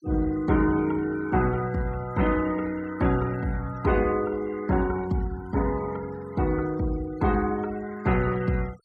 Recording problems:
noise reduction artefacts; signal-to-artefact ratio 21 dB

